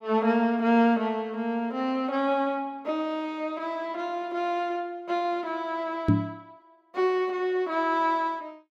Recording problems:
microphone thump; at 6 s; peak +9 dB vs average level

